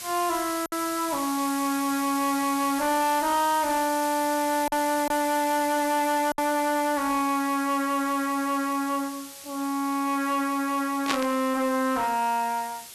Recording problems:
distorted audio; soft clipping, signal-to-distortion ratio 10 dB
background hiss; SNR 11 dB
lost packets; 1.4% of the sound replaced, filled with silence
burst of static; at 11 s; peak +4 dB vs average level

